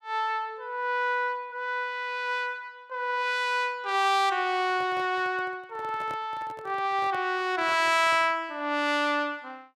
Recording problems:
microphone handling noise; from 4.5 to 8.5 s; peak -12 dB vs average level

